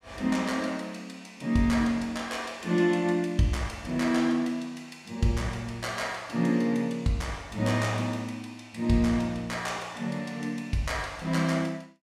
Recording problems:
none

